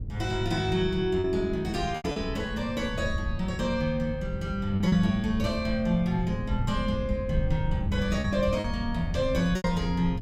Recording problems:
low-frequency rumble; below 120 Hz, SNR 8 dB
wind on the microphone; below 110 Hz, SNR 11 dB
lost packets; 4% of the sound replaced, filled with repeated pitch periods

